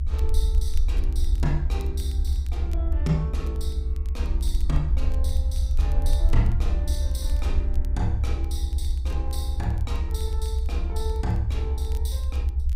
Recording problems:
electrical hum; 50 Hz, harmonics up to 700 Hz, SNR 21 dB
low-frequency rumble; below 66 Hz, SNR -7 dB
crackling; vinyl, SNR 22 dB

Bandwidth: 15.5 kHz